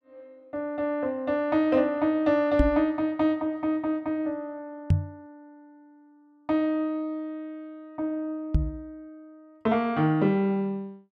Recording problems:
microphone bump; at 2.5 s, at 5 s and at 8.5 s; peak +8 dB vs average level

